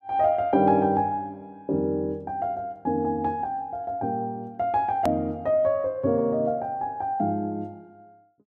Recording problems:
hard cut with a click; at 5 s

